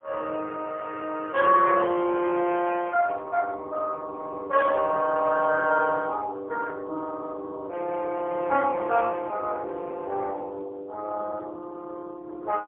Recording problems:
telephone audio; 240 Hz to 2.8 kHz, AMR-NB, then MP3

